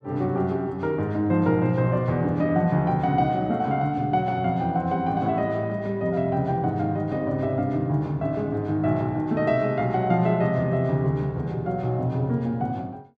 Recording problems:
none

